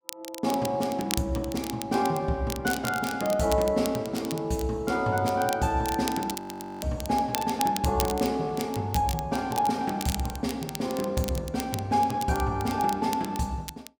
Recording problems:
crackle; vinyl, SNR 11 dB
audio freezing; at 6.5 s

